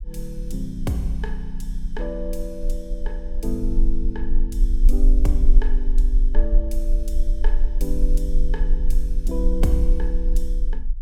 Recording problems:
rumble; below 36 Hz, strongest tone 18 Hz, SNR -6 dB

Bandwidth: 17 kHz